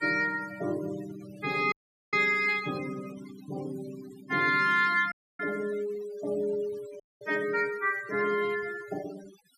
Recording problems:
denoising artefacts; signal-to-artefact ratio 18 dB
audio cutting out; at 1.5 s, at 5 s and at 7 s

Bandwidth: 14.5 kHz